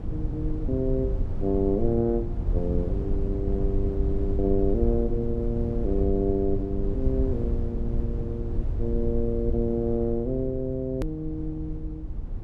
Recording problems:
low-frequency rumble; below 86 Hz, SNR 2 dB
edit click; at 11 s

